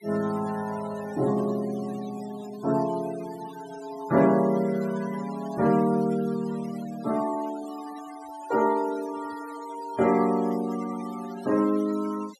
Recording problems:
denoising artefacts; signal-to-artefact ratio 18 dB

